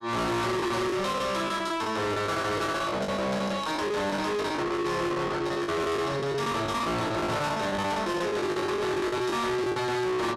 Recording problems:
distorted audio; soft clipping, signal-to-distortion ratio 6 dB
lost packets; 16% of the sound replaced, filled with the last packet

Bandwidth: 13 kHz